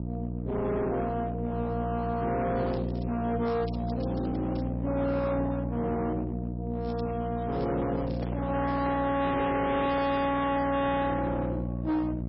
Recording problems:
lossy compression; MP3, log-spectral distance 3 dB, nothing above 4.8 kHz
distortion; hard clipping, uneven, signal-to-distortion ratio 10 dB
hum; 60 Hz, harmonics up to 840 Hz, SNR 4 dB
crackling; from 2.5 to 4.5 s, from 7 to 9.5 s and at 11 s; loose cable, SNR 25 dB
microphone handling noise; from 8 to 11 s; peak -2 dB vs average level

